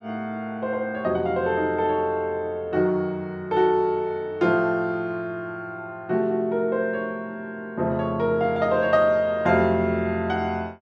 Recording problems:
none

